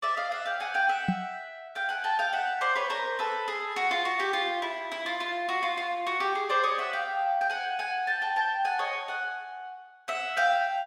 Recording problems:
knock on the microphone; at 1 s; peak +5 dB vs average level

